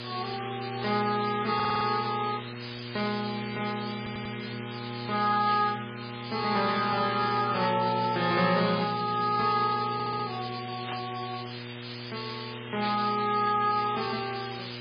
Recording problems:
codec artefacts; Vorbis, then MP3, log-spectral distance 20 dB, nothing above 4.4 kHz
electrical hum; 60 Hz, harmonics up to 1.1 kHz, SNR 11 dB
hiss; SNR 11 dB
stutter; at 1.5 s, at 4 s and at 10 s
static burst; 4 times, first at 5.5 s; peak -5 dB vs average level

